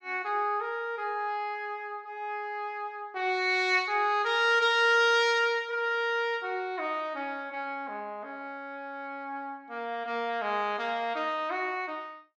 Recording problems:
none

